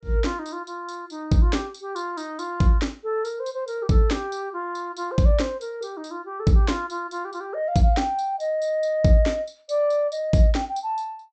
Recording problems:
treble cut off; nothing above 8 kHz

